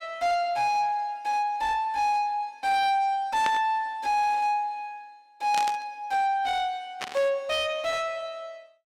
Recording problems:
distortion; soft clipping, signal-to-distortion ratio 10 dB
static burst; at 3.5 s, at 5.5 s and at 7 s; peak -2 dB vs average level

